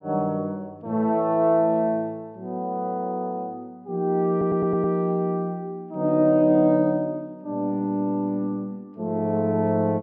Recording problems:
audio stuttering; at 4.5 s

